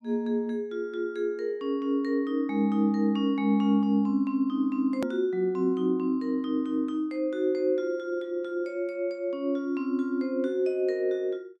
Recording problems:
edit click; at 5 s

